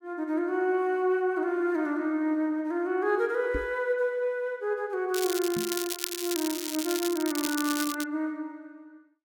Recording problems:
knock on the microphone; at 3.5 s and at 5.5 s; peak -2 dB vs average level
crackle; from 5 to 8 s; loose cable, SNR 5 dB

